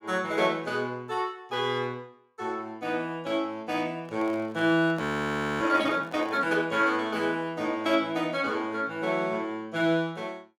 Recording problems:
handling noise; from 4 to 6.5 s; peak -9 dB vs average level
frozen audio; at 5 s for 0.5 s

